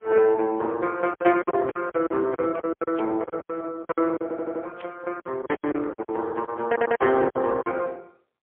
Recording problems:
phone line; 280 Hz to 3.2 kHz, AMR-NB, then MP3
packet loss; 15% of the sound replaced, filled with silence
burst of static; at 3 s and at 5 s; peak -17 dB vs average level
stutter; at 4 s and at 6.5 s

